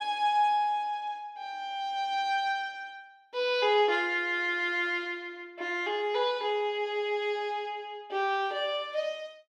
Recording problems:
none

